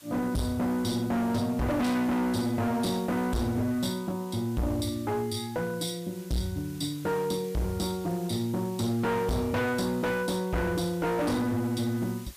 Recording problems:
distorted audio; hard clipping, uneven, signal-to-distortion ratio 6 dB
hiss; slope 0 dB per octave, SNR 20 dB

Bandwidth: 15 kHz